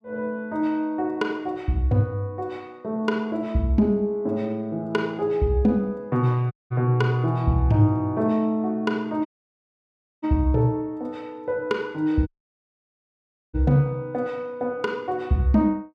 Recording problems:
dropout; at 6.5 s, at 9.5 s for 1 s and at 12 s for 1.5 s

